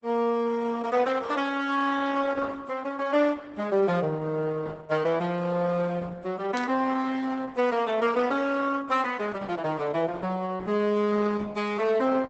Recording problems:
lossy codec; Opus, log-spectral distance 3 dB, nothing above 8 kHz
burst of static; at 6.5 s; peak -7 dB vs average level

